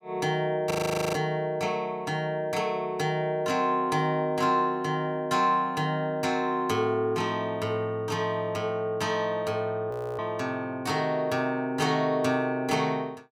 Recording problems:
audio freezing; at 0.5 s and at 10 s

